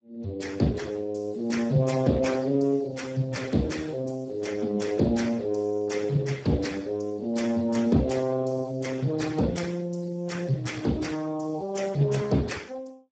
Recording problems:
lossy compression; Speex, then Speex, log-spectral distance 5 dB, nothing above 7.6 kHz

